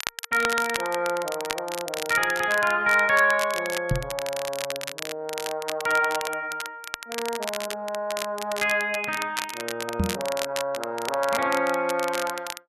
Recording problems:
crackling; vinyl, SNR 8 dB
microphone thump; at 4 s and at 10 s; peak +4 dB vs average level

